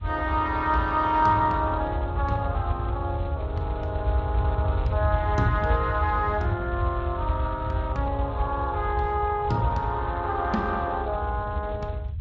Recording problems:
lossy compression; Speex, log-spectral distance 2 dB
rumble; below 96 Hz, SNR 3 dB

